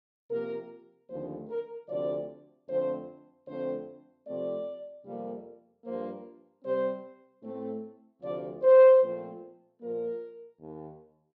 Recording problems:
none

